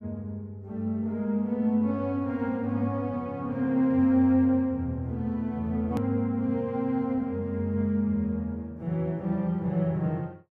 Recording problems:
edit click; at 6 s

